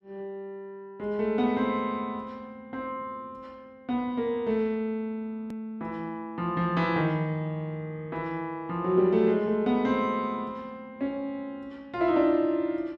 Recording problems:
edit click; at 5.5 s

